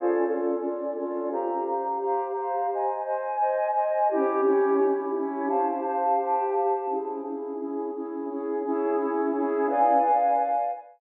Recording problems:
low-pass filter; nothing above 4 kHz

